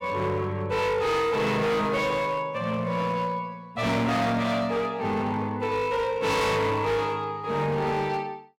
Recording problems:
distortion; hard clipping, signal-to-distortion ratio 7 dB

